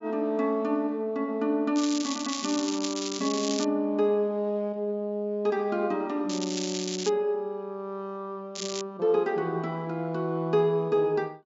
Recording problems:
treble cut off; nothing above 7.5 kHz
crackle; from 2 to 3.5 s, at 6.5 s and at 8.5 s; loose cable, SNR 7 dB

